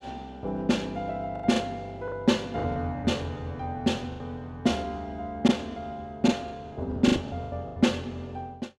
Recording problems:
lost packets; 10% of the sound replaced, filled with the last packet

